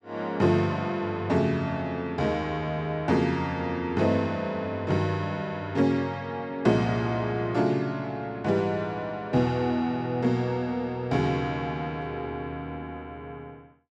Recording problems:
none

